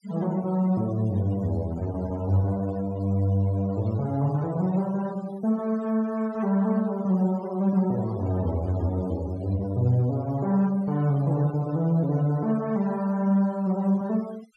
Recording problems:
denoising artefacts; signal-to-artefact ratio 23 dB

